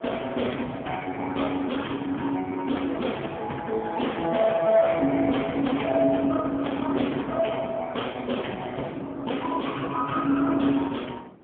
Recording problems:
telephone audio; 150 Hz to 3.4 kHz, AMR-NB, then MP3
distortion; hard clipping, uneven, signal-to-distortion ratio 13 dB
wind noise; below 570 Hz, SNR 20 dB

